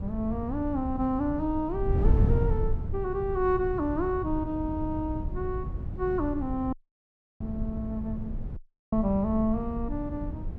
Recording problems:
wind noise; below 120 Hz, SNR 3 dB
dropout; at 6.5 s for 0.5 s and at 8.5 s

